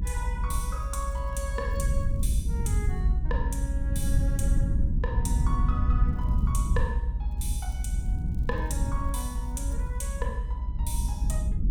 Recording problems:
hum; 60 Hz, harmonics up to 720 Hz, SNR 16 dB
rumble; below 80 Hz, SNR -8 dB
crackling; from 1 to 3 s, at 6 s and from 7.5 to 10 s; loose cable, SNR 26 dB

